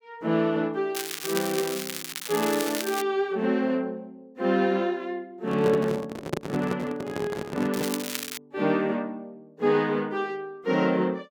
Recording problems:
crackle; from 1 to 3 s and at 7.5 s; loose cable, SNR 6 dB
microphone handling noise; from 5.5 to 8 s; peak +2 dB vs average level

